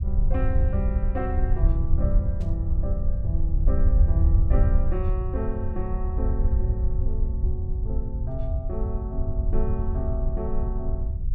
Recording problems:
rumble; below 74 Hz, SNR -8 dB
static burst; at 2.5 s; peak -14 dB vs average level

